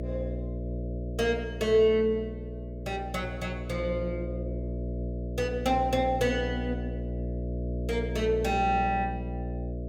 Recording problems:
hum; 60 Hz, harmonics up to 660 Hz, SNR 6 dB

